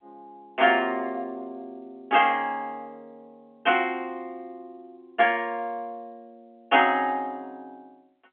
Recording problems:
phone line; 240 Hz to 3.4 kHz, G.711

